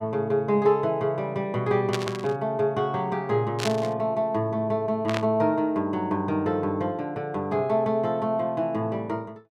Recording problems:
burst of static; at 2 s, at 3.5 s and at 5 s; peak 0 dB vs average level

